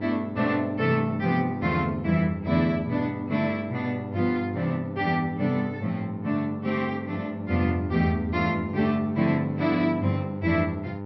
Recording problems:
treble missing; nothing above 5.7 kHz
hum; 50 Hz, harmonics up to 1.4 kHz, SNR 11 dB

